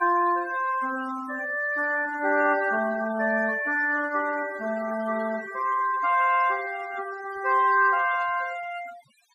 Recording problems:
noise reduction artefacts; signal-to-artefact ratio 17 dB

